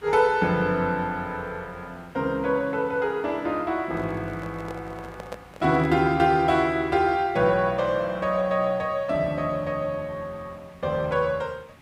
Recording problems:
hiss; SNR 26 dB
microphone handling noise; from 4 to 6 s; peak -7 dB vs average level

